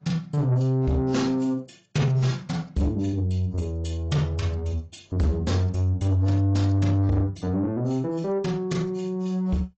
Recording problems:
lossy codec; AAC, log-spectral distance 2 dB, nothing above 7.3 kHz
distortion; soft clipping, signal-to-distortion ratio 11 dB

